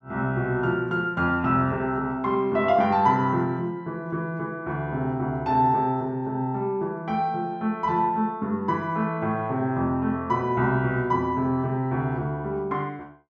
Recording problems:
none

